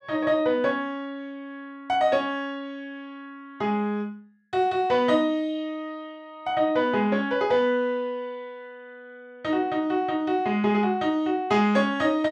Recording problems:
none

